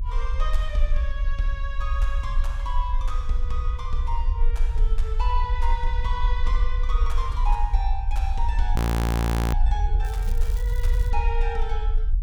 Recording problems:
low-frequency rumble; below 56 Hz, SNR -7 dB
audio freezing; at 9 s for 1 s
crackle; from 10 to 11 s; loose cable, SNR 14 dB

